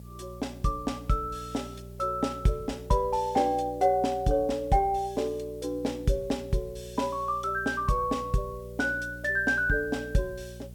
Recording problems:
hum; 60 Hz, harmonics up to 480 Hz, SNR 17 dB
hiss; slope 0 dB per octave, SNR 30 dB

